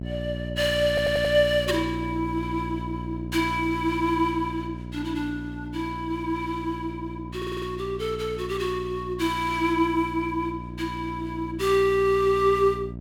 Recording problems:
electrical hum; 60 Hz, harmonics up to 720 Hz, SNR 10 dB
stutter; at 1 s and at 7.5 s

